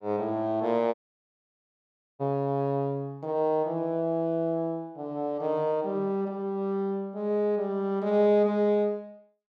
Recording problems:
audio cutting out; at 1 s for 1.5 s

